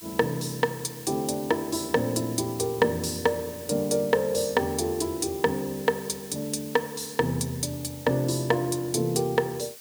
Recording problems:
background hiss; slope +3 dB per octave, SNR 15 dB

